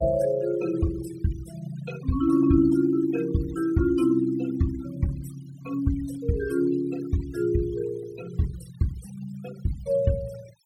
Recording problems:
denoising artefacts; signal-to-artefact ratio 20 dB

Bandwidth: 17 kHz